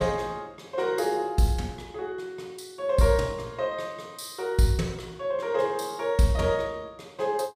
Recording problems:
none

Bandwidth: 15 kHz